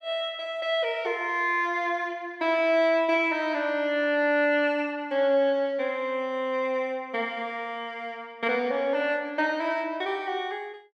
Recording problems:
none

